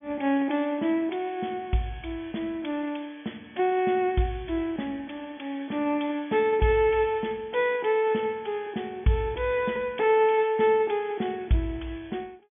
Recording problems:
treble missing; nothing above 3.5 kHz

